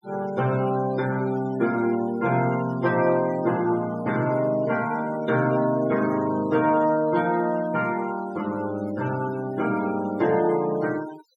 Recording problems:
noise reduction artefacts; signal-to-artefact ratio 20 dB

